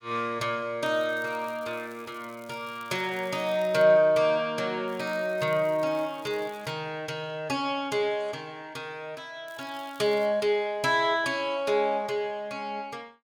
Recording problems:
crackling; from 1 to 4 s, from 5 to 6.5 s and at 9.5 s; loose cable, SNR 26 dB

